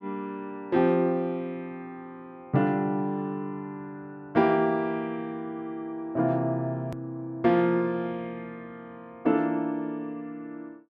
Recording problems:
hard cut with a click; at 7 s

